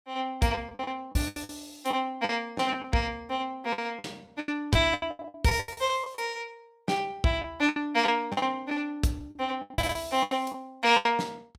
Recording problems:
packet loss; 15% of the sound replaced, filled with the last packet

